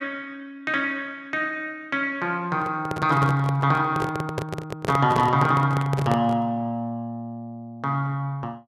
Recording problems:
microphone handling noise; from 2.5 to 6.5 s; peak +1 dB vs average level

